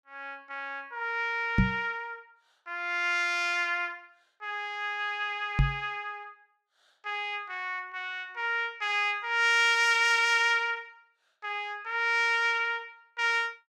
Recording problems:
knock on the microphone; at 1.5 s and at 5.5 s; peak +7 dB vs average level

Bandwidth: 16.5 kHz